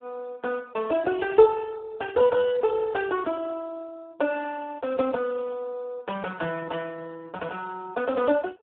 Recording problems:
telephone audio; 220 Hz to 3 kHz, Speex

